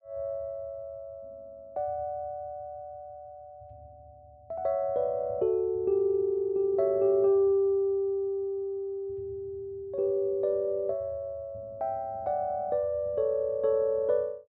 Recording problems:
none

